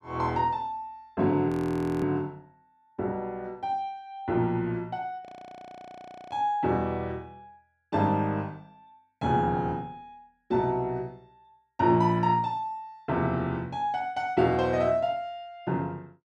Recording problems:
frozen audio; at 1.5 s for 0.5 s and at 5.5 s for 1 s

